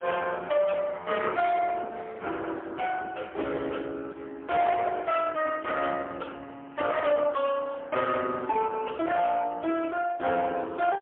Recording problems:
telephone audio; 260 Hz to 3.4 kHz, AMR-NB, then MP3
distortion; soft clipping, signal-to-distortion ratio 12 dB

